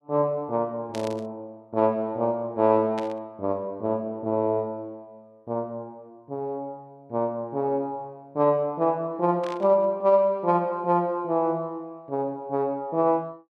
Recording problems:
static burst; at 1 s, at 3 s and at 9.5 s; peak -9 dB vs average level

